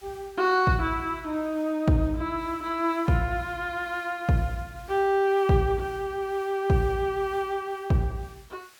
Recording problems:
background hiss; slope +1 dB per octave, SNR 27 dB

